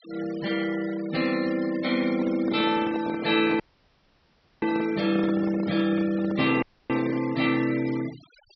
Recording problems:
low-pass filter; nothing above 5.7 kHz
denoising artefacts; signal-to-artefact ratio 17 dB
handling noise; from 2 to 7.5 s; peak -4 dB vs average level
dropout; at 3.5 s for 1 s and at 6.5 s

